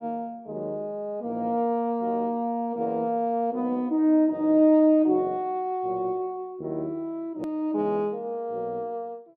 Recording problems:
click at an edit; at 7.5 s

